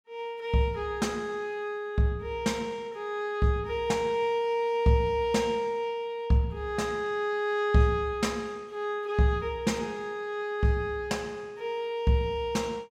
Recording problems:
none

